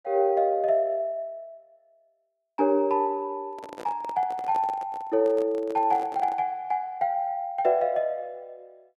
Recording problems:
handling noise; from 3.5 to 6.5 s; peak -9 dB vs average level

